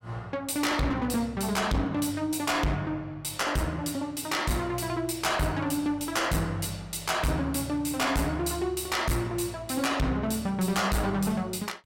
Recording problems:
distortion; hard clipping, uneven, signal-to-distortion ratio 7 dB

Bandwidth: 16.5 kHz